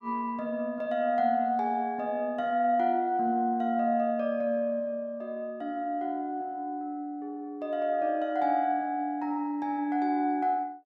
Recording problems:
none

